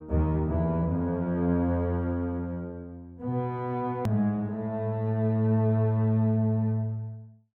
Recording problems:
click at an edit; at 4 s

